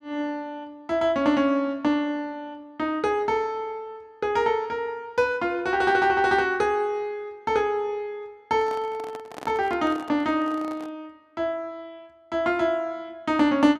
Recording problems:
handling noise; from 8.5 to 11 s; peak -9 dB vs average level

